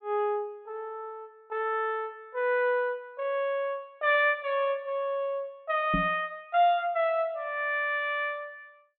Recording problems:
low-pass filter; nothing above 4 kHz
microphone thump; at 6 s; peak +2 dB vs average level

